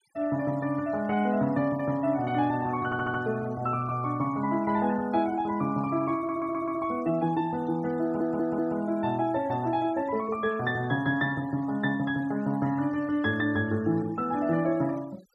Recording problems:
noise reduction artefacts; signal-to-artefact ratio 22 dB
audio stuttering; at 3 s, at 6 s and at 8 s

